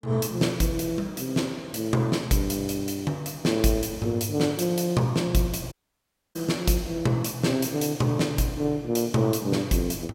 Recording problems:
dropout; at 5.5 s for 0.5 s

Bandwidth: 16 kHz